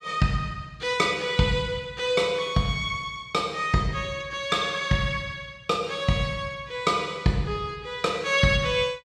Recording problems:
none

